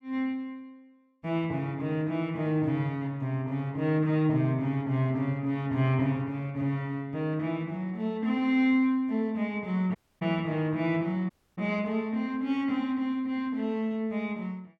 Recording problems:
audio cutting out; at 10 s and at 11 s

